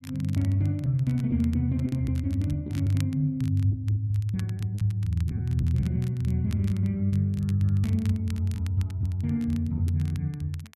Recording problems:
crackling; vinyl, SNR 24 dB
packet loss; 5% of the sound replaced, filled with repeated pitch periods

